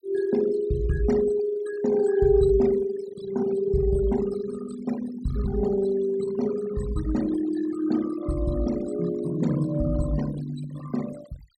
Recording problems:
denoising artefacts; signal-to-artefact ratio 16 dB

